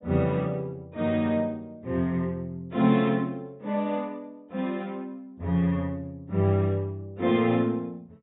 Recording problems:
low-pass filter; nothing above 4 kHz

